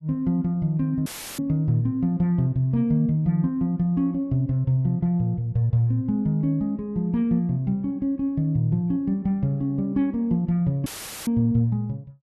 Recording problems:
audio cutting out; at 1 s and at 11 s; filled with static

